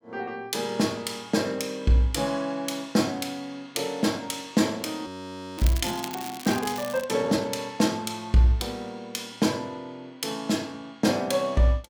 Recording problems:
crackle; from 5 to 7 s; loose cable, SNR 12 dB
audio freezing; at 5 s for 0.5 s

